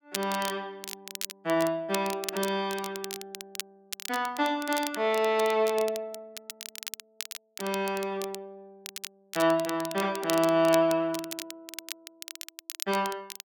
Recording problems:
crackle; vinyl, SNR 11 dB

